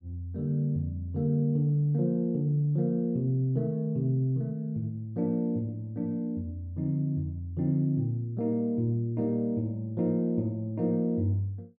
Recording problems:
none

